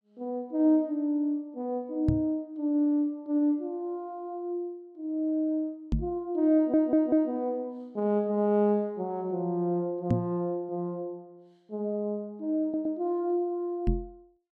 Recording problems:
microphone thump; 4 times, first at 2 s; peak +6 dB vs average level
audio stuttering; at 6.5 s and at 13 s

